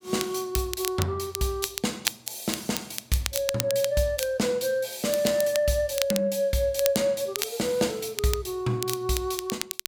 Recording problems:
crackle; vinyl, SNR 6 dB

